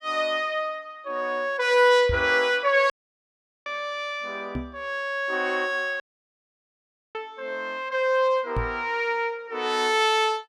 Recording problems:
microphone thump; at 2 s, at 4.5 s and at 8.5 s; peak -2 dB vs average level
audio cutting out; at 3 s for 1 s and at 6 s for 1 s

